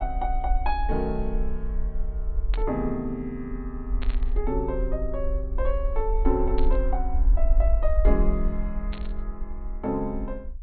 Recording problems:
treble cut off; nothing above 4.4 kHz
low-frequency rumble; below 48 Hz, SNR -1 dB
burst of static; 4 times, first at 2.5 s; peak -3 dB vs average level

